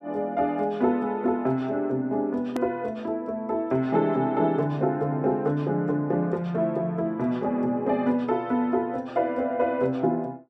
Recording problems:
click at an edit; at 2.5 s

